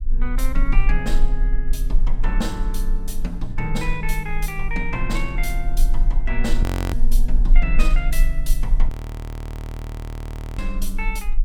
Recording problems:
rumble; below 32 Hz, strongest tone 24 Hz, SNR -4 dB
frozen audio; at 6.5 s and at 9 s for 1.5 s

